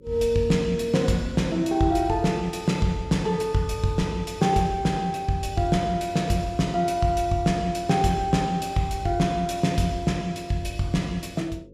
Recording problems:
electrical hum; 50 Hz, harmonics up to 550 Hz, SNR 26 dB

